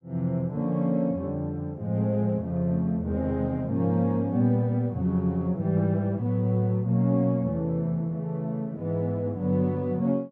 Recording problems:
none

